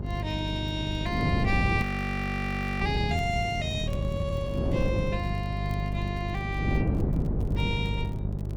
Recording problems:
hum; 50 Hz, harmonics up to 600 Hz, SNR 1 dB
wind noise; below 260 Hz, SNR 1 dB
crackling; vinyl, SNR 27 dB
audio freezing; at 2 s for 1 s

